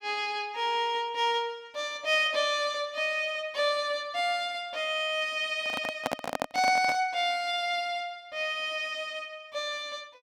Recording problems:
handling noise; from 5.5 to 7 s; peak +3 dB vs average level

